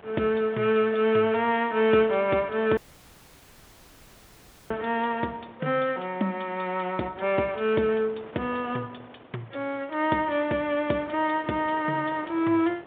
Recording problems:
telephone audio; 280 Hz to 3.7 kHz, G.726
wind on the microphone; below 1.3 kHz, SNR 23 dB
dropout; at 3 s for 2 s

